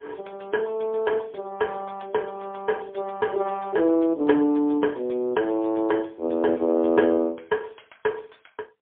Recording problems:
telephone audio; 260 Hz to 2.2 kHz, AMR-NB, then MP3

